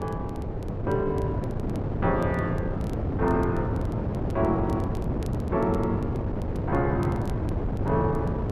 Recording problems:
wind noise; below 350 Hz, SNR 0 dB
crackle; vinyl, SNR 27 dB

